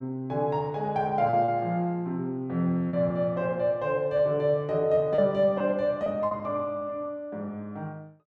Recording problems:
packet loss; 4% of the sound replaced, filled with repeated pitch periods

